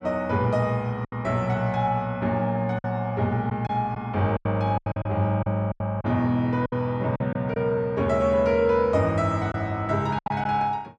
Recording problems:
lost packets; 7% of the sound replaced, filled with silence

